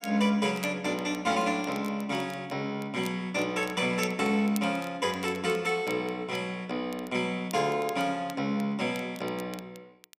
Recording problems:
crackle; vinyl, SNR 19 dB

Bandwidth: 15 kHz